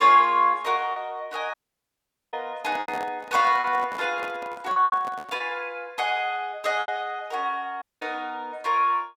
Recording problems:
packet loss; 6% of the sound replaced, filled with repeated pitch periods
dropout; at 1.5 s for 1 s and at 8 s
handling noise; from 2.5 to 5.5 s; peak -7 dB vs average level

